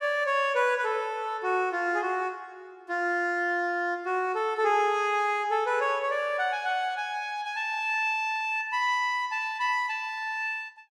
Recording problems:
none

